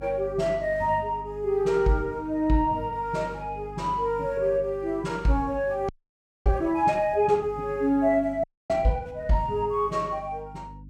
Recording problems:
hum; 50 Hz, harmonics up to 300 Hz, SNR 19 dB
frozen audio; at 6 s for 0.5 s and at 8.5 s

